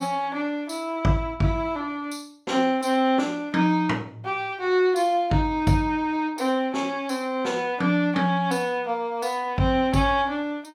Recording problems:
none

